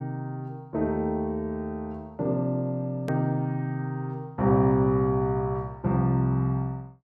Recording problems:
edit click; at 3 s

